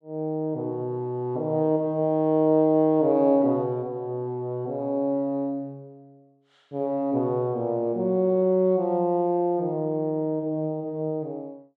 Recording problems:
none

